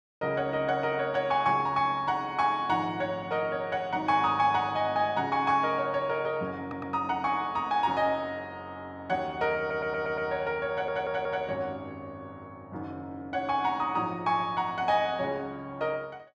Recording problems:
stutter; at 6.5 s, at 9.5 s and at 11 s

